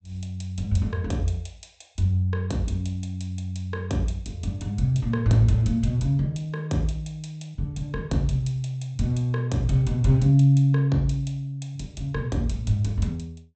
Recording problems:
treble cut off; nothing above 8 kHz

